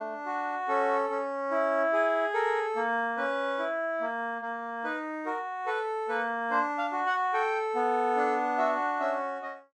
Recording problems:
none

